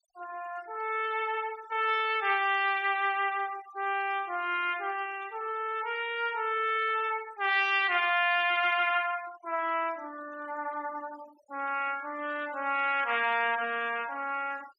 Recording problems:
denoising artefacts; signal-to-artefact ratio 21 dB

